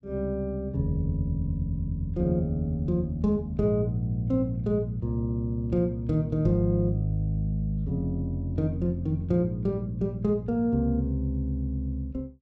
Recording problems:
none

